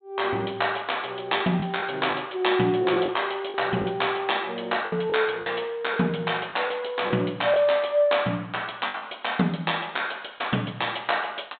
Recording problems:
low-pass filter; nothing above 4 kHz
lost packets; 5% of the sound replaced, filled with the last packet

